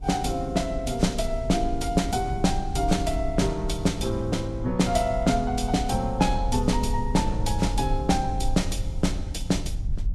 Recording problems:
lossy codec; Vorbis, log-spectral distance 2 dB, nothing above 12.7 kHz
rumble; below 64 Hz, SNR 7 dB

